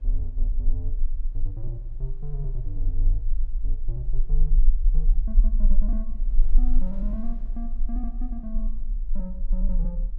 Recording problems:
low-frequency rumble; below 32 Hz, strongest tone 18 Hz, SNR -10 dB
wind on the microphone; below 170 Hz, SNR 15 dB

